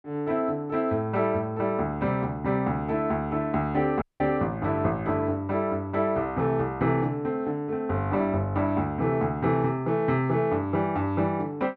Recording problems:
dropout; at 4 s

